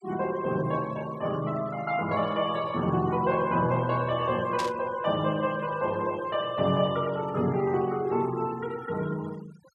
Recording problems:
noise reduction artefacts; signal-to-artefact ratio 20 dB
burst of static; at 4.5 s; peak -3 dB vs average level

